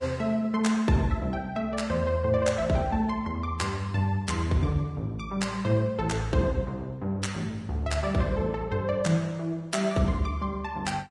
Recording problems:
codec artefacts; Vorbis, log-spectral distance 2 dB, nothing above 10.4 kHz

